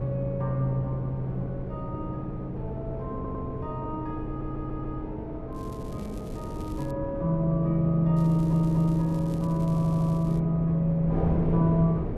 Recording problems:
wind noise; below 380 Hz, SNR 8 dB
stutter; 4 times, first at 3 s
crackle; from 5.5 to 7 s and from 8 to 10 s; loose cable, SNR 27 dB

